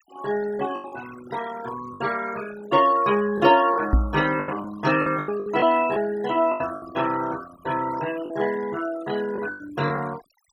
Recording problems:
noise reduction artefacts; signal-to-artefact ratio 16 dB
lost packets; 8% of the sound replaced, filled with the last packet
microphone bump; at 4 s; peak +8 dB vs average level

